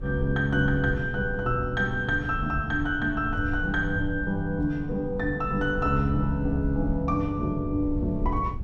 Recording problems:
wind on the microphone; below 98 Hz, SNR 9 dB

